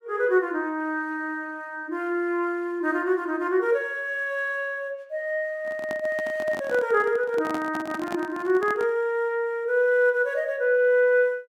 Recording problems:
microphone handling noise; from 5.5 to 9 s; peak -5 dB vs average level

